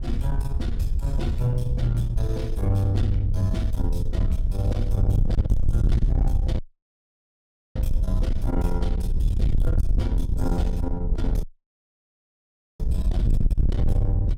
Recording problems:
distorted audio; soft clipping, signal-to-distortion ratio 6 dB
wind on the microphone; below 76 Hz, SNR -2 dB
dropout; at 6.5 s for 1 s and at 11 s for 1.5 s

